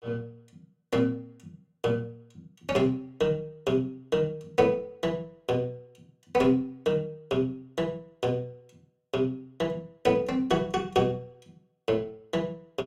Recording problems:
none

